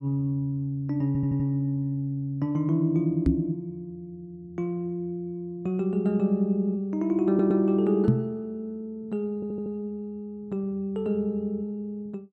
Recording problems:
stutter; at 1 s, at 7.5 s and at 9.5 s
microphone thump; at 3.5 s and at 8 s; peak +8 dB vs average level

